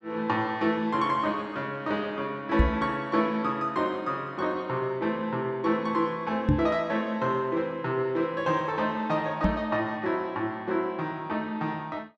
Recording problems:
microphone thump; at 2.5 s, at 6.5 s and at 9.5 s; peak +8 dB vs average level

